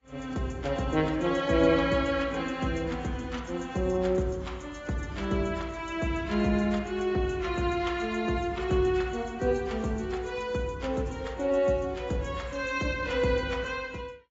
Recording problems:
lossy codec; AAC, log-spectral distance 3 dB, nothing above 7.3 kHz

